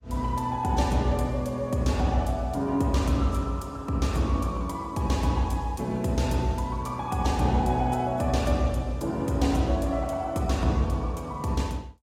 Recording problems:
lossy compression; AAC, log-spectral distance 2 dB, nothing above 15.1 kHz

